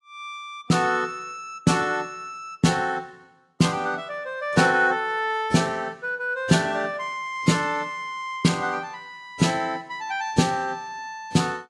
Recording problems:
codec artefacts; AAC, log-spectral distance 2 dB, nothing above 11 kHz

